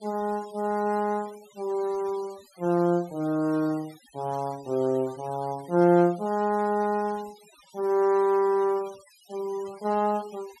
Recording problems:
denoising artefacts; signal-to-artefact ratio 24 dB

